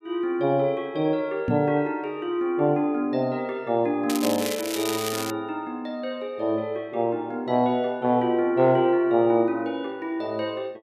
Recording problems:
microphone bump; at 1.5 s; peak +2 dB vs average level
crackling; from 4 to 5.5 s; loose cable, SNR 7 dB

